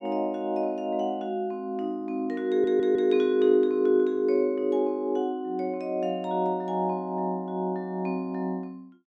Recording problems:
stutter; at 2.5 s

